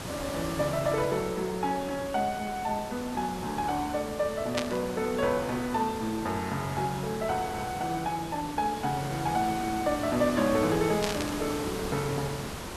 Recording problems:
background hiss; slope -4 dB per octave, SNR 8 dB
static burst; at 4.5 s and at 11 s; peak +4 dB vs average level

